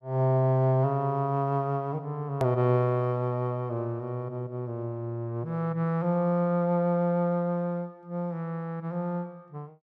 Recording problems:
click at an edit; at 2.5 s

